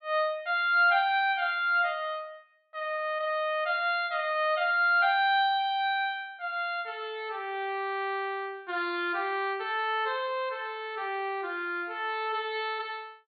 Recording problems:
treble cut off; nothing above 4.5 kHz

